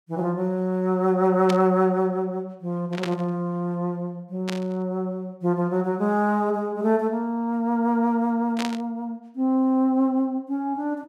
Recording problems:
static burst; 4 times, first at 1.5 s; peak -3 dB vs average level

